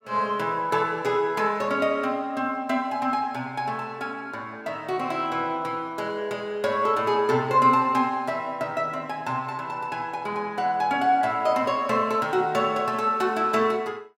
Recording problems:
none

